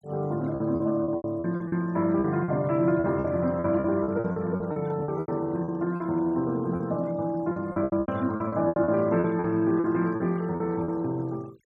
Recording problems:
denoising artefacts; signal-to-artefact ratio 28 dB
lost packets; 15% of the sound replaced, filled with repeated pitch periods

